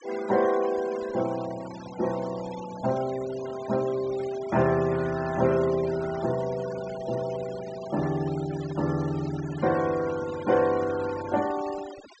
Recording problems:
treble missing; nothing above 8 kHz
noise reduction artefacts; signal-to-artefact ratio 16 dB

